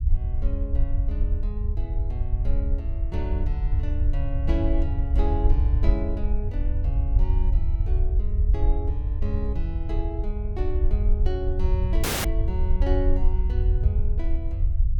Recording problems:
rumble; below 66 Hz, SNR -9 dB
audio cutting out; at 12 s

